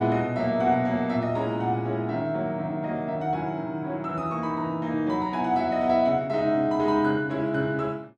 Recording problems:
none

